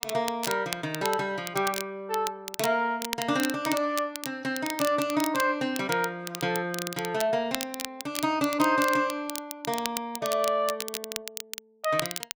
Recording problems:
crackle; vinyl, SNR 8 dB

